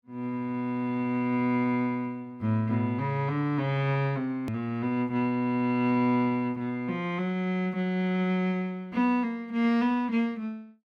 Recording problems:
click at an edit; at 4.5 s

